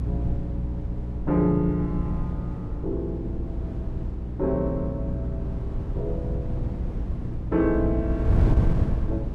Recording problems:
electrical hum; 60 Hz, harmonics up to 300 Hz, SNR 5 dB
wind on the microphone; below 140 Hz, SNR 2 dB

